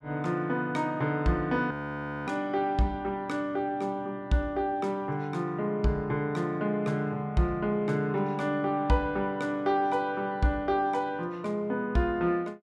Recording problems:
frozen audio; at 1.5 s for 0.5 s

